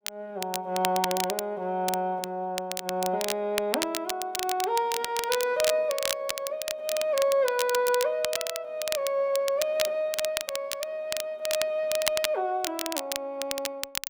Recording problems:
crackle; vinyl, SNR 5 dB

